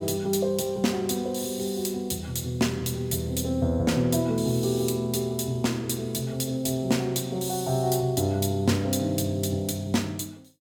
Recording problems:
none

